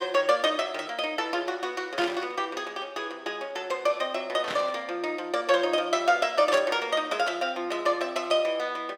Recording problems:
burst of static; at 2 s, at 4.5 s and at 6.5 s; peak -2 dB vs average level

